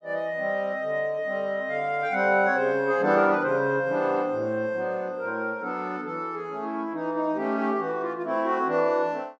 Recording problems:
none

